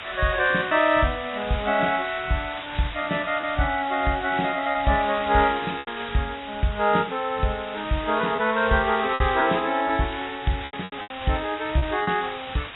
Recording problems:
codec artefacts; AAC, log-spectral distance 22 dB, nothing above 3.7 kHz
hiss; SNR 12 dB
lost packets; 5% of the sound replaced, filled with repeated pitch periods

